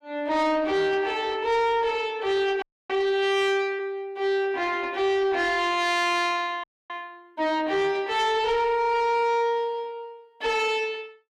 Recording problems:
distorted audio; soft clipping, signal-to-distortion ratio 10 dB
frozen audio; at 2.5 s and at 6.5 s

